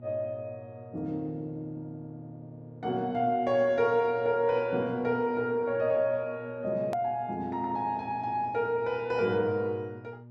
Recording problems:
electrical hum; 60 Hz, harmonics up to 840 Hz, SNR 19 dB
edit click; at 7 s

